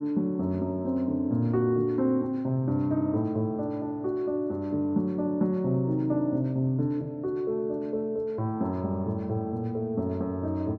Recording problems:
none

